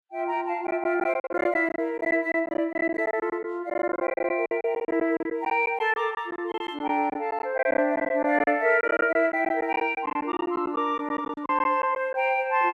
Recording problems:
lost packets; 14% of the sound replaced, filled with silence

